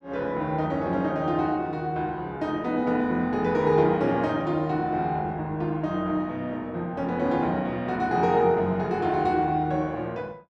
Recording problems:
none

